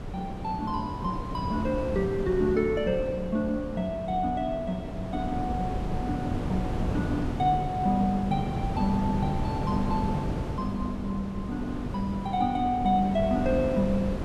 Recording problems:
wind noise; below 360 Hz, SNR 4 dB

